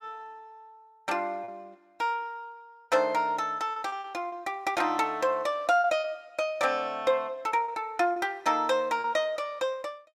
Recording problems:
packet loss; 4% of the sound replaced, filled with repeated pitch periods

